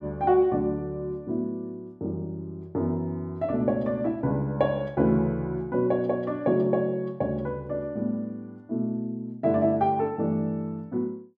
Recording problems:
none

